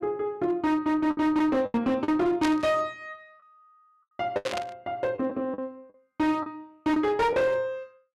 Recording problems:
distorted audio; hard clipping, uneven, signal-to-distortion ratio 11 dB
packet loss; 6% of the sound replaced, filled with the last packet
static burst; at 2.5 s and at 4.5 s; peak -2 dB vs average level

